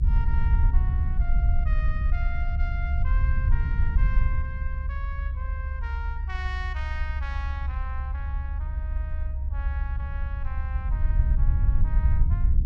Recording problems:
low-frequency rumble; below 70 Hz, SNR -13 dB

